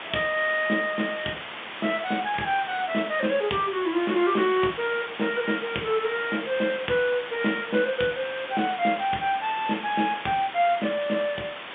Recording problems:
phone line; 150 Hz to 3.6 kHz, G.711
background hiss; SNR 10 dB

